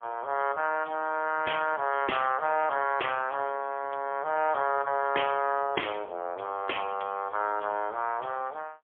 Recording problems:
phone line; 340 Hz to 3.3 kHz, AMR-NB, then MP3

